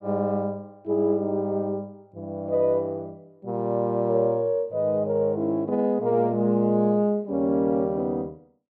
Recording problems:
none

